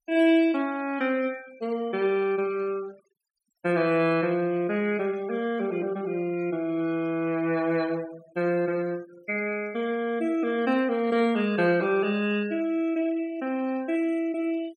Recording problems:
noise reduction artefacts; signal-to-artefact ratio 24 dB

